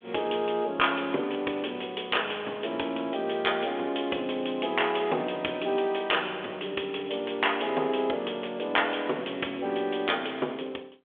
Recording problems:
telephone audio; 300 Hz to 3.5 kHz, G.726

